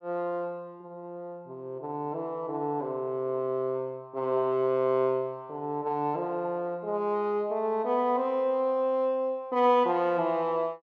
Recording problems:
none

